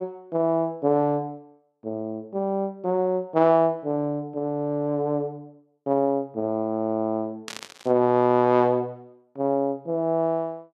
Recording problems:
static burst; at 7.5 s; peak -7 dB vs average level

